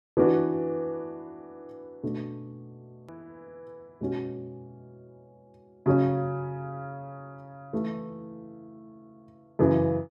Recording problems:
hard cut with a click; at 3 s

